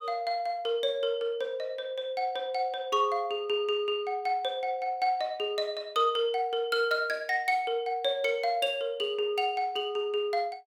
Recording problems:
none

